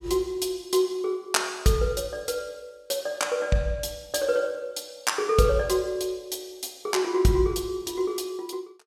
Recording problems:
none

